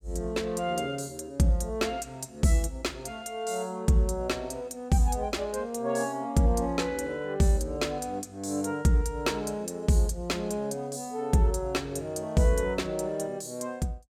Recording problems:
none

